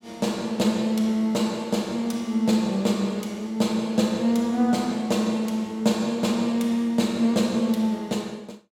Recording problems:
none

